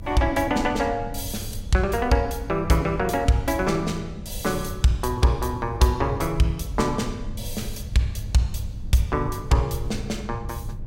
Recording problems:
hum; 50 Hz, harmonics up to 800 Hz, SNR 21 dB
rumble; below 100 Hz, SNR 12 dB

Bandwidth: 16 kHz